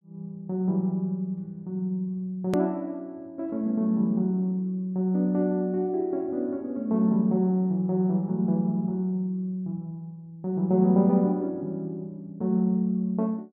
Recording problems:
hard cut with a click; at 2.5 s

